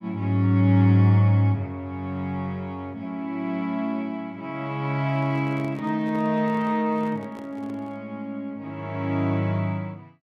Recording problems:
handling noise; from 5 to 8 s; peak -13 dB vs average level

